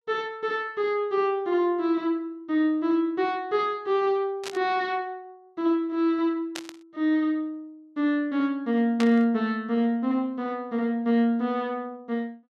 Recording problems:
burst of static; at 4.5 s, at 6.5 s and at 9 s; peak -3 dB vs average level

